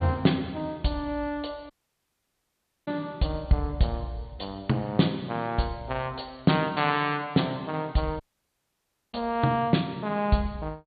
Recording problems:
treble missing; nothing above 4.5 kHz
dropout; at 1.5 s for 1 s and at 8 s for 1 s

